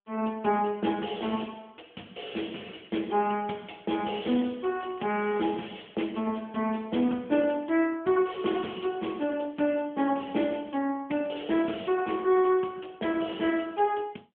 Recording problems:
phone line; 170 Hz to 3.3 kHz, AMR-NB
crackle; at 2.5 s, from 4.5 to 6 s and from 8 to 9.5 s; loose cable, SNR 29 dB

